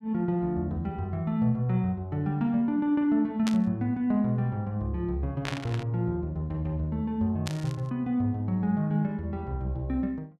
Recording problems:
burst of static; at 3.5 s, at 5.5 s and at 7.5 s; peak -1 dB vs average level

